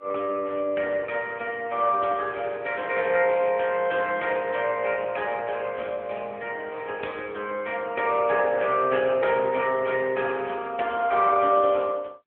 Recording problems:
telephone audio; 260 Hz to 3.3 kHz, AMR-NB

